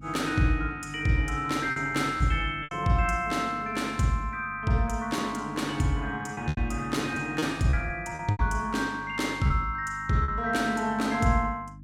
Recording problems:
hum; 50 Hz, harmonics up to 300 Hz, SNR 19 dB
packet loss; 5% of the sound replaced, filled with repeated pitch periods

